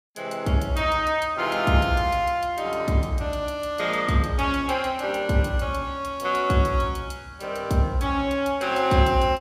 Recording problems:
none

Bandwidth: 15.5 kHz